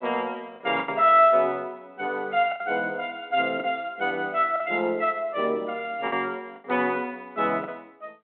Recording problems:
telephone audio; 190 Hz to 3.4 kHz, G.726
packet loss; 6% of the sound replaced, filled with the last packet

